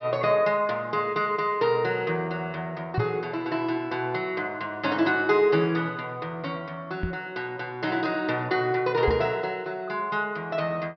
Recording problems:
low-pass filter; nothing above 5.5 kHz
knock on the microphone; at 3 s, at 7 s and at 9 s; peak +4 dB vs average level

